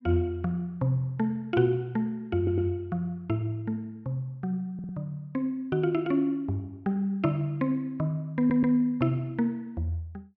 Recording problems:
stutter; at 2.5 s, at 4.5 s and at 8.5 s

